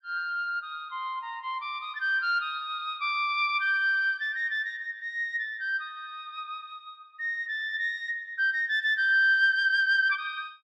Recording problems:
none

